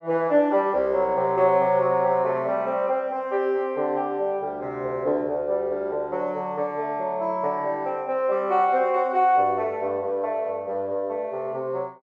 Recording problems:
none

